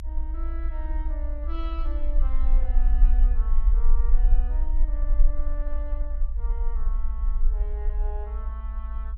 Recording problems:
rumble; below 42 Hz, SNR -16 dB

